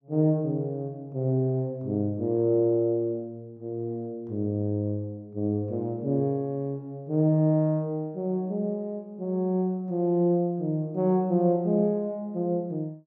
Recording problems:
none

